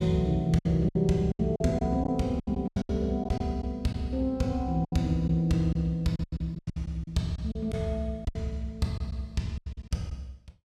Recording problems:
packet loss; 13% of the sound replaced, filled with silence

